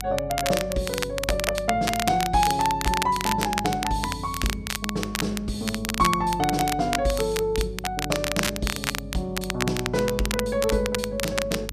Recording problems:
hum; 50 Hz, harmonics up to 300 Hz, SNR 14 dB
crackling; vinyl, SNR 4 dB

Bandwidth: 14.5 kHz